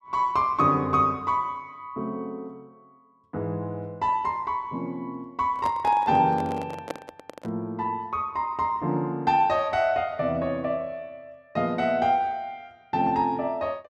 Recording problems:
handling noise; from 5.5 to 7.5 s; peak -2 dB vs average level

